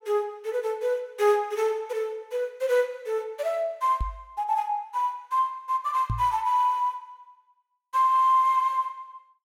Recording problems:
microphone thump; at 4 s and at 6 s; peak 0 dB vs average level

